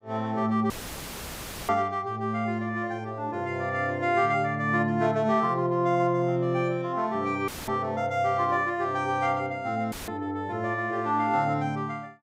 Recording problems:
dropout; at 0.5 s for 1 s, at 7.5 s and at 10 s; filled with static

